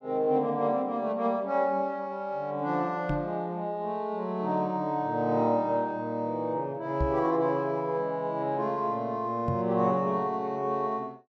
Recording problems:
knock on the microphone; at 3 s, at 7 s and at 9.5 s; peak +2 dB vs average level

